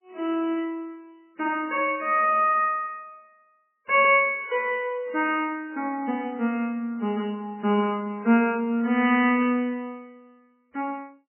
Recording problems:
lossy compression; MP3, log-spectral distance 2 dB, nothing above 3 kHz

